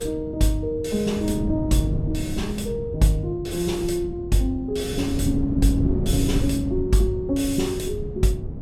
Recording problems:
hum; 50 Hz, harmonics up to 550 Hz, SNR 22 dB
wind noise; below 190 Hz, SNR 5 dB

